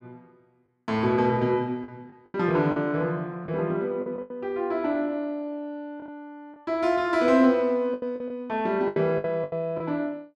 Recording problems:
lost packets; 8% of the sound replaced, filled with the last packet

